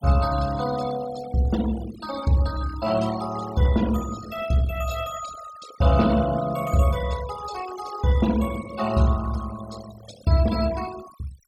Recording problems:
denoising artefacts; signal-to-artefact ratio 15 dB

